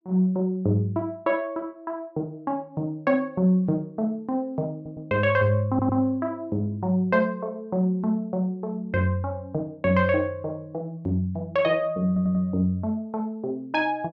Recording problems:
audio stuttering; at 5 s, at 5.5 s and at 12 s

